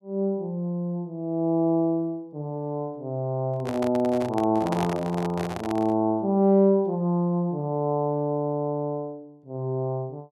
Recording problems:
handling noise; from 3.5 to 6 s; peak -1 dB vs average level

